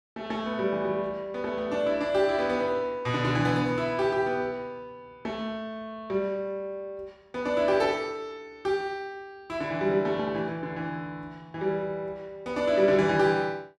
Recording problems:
none

